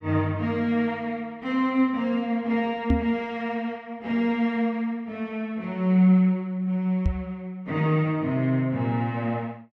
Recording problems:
microphone bump; at 3 s and at 7 s; peak +6 dB vs average level

